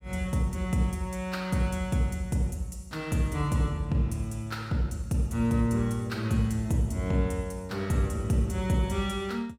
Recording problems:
none

